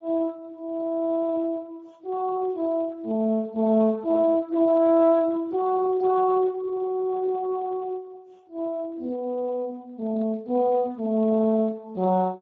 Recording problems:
codec artefacts; Speex, then Speex, log-spectral distance 2 dB

